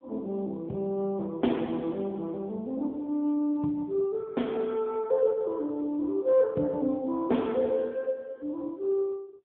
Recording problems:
telephone audio; 130 Hz to 3.4 kHz, AMR-NB

